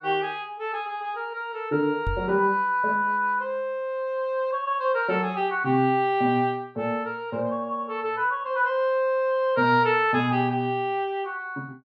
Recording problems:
microphone bump; at 2 s; peak -2 dB vs average level

